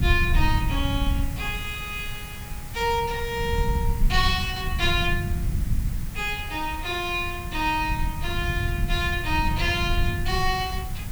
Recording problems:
background hiss; SNR 14 dB
low-frequency rumble; below 100 Hz, SNR 3 dB

